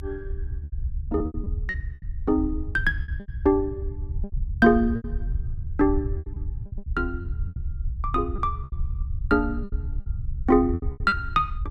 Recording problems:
low-frequency rumble; below 80 Hz, SNR 7 dB
lost packets; 11% of the sound replaced, filled with repeated pitch periods

